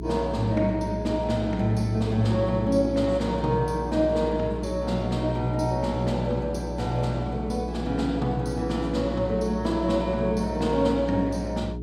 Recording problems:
hum; 60 Hz, harmonics up to 420 Hz, SNR 8 dB

